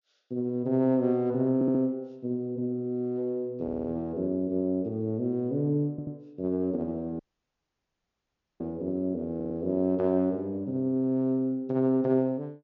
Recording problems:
treble missing; nothing above 7.1 kHz
stutter; 4 times, first at 1.5 s
dropout; at 7 s for 1.5 s

